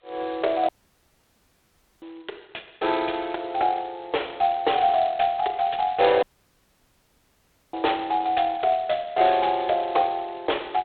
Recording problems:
phone line; 340 Hz to 3.9 kHz, G.726
audio cutting out; at 0.5 s for 1.5 s and at 6 s for 1.5 s

